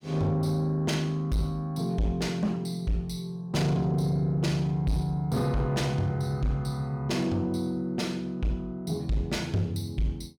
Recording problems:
distorted audio; soft clipping, signal-to-distortion ratio 11 dB

